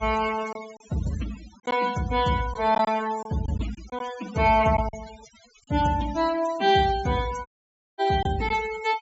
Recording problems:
low-pass filter; nothing above 7.6 kHz
noise reduction artefacts; signal-to-artefact ratio 16 dB
lost packets; 4% of the sound replaced, filled with silence
dropout; at 7.5 s for 0.5 s

